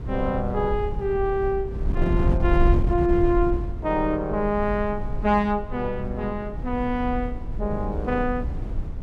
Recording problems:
wind on the microphone; below 94 Hz, SNR 4 dB

